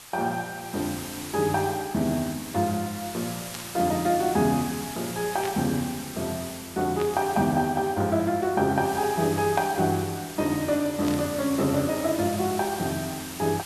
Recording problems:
hiss; SNR 11 dB
static burst; 5 times, first at 3.5 s; peak -6 dB vs average level

